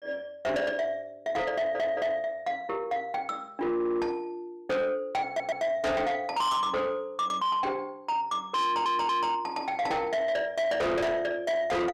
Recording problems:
distorted audio; soft clipping, signal-to-distortion ratio 7 dB
stutter; 4 times, first at 1.5 s

